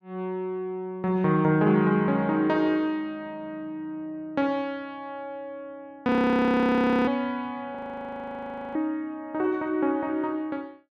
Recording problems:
audio freezing; at 6 s for 1 s and at 8 s for 1 s

